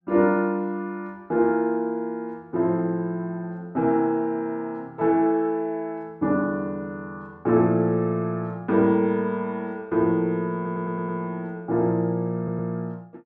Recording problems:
stutter; at 11 s and at 12 s

